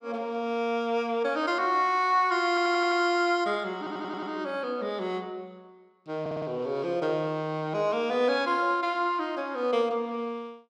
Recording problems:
audio stuttering; at 2.5 s, at 4 s and at 6 s

